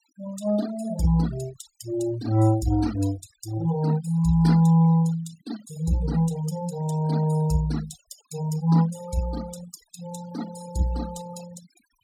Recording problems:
noise reduction artefacts; signal-to-artefact ratio 17 dB

